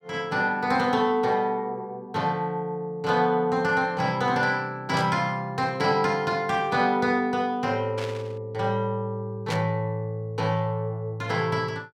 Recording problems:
static burst; at 5 s, at 8 s and at 9.5 s; peak -5 dB vs average level

